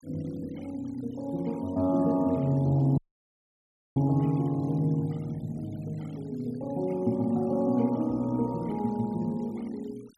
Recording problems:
denoising artefacts; signal-to-artefact ratio 27 dB
audio cutting out; at 3 s for 1 s

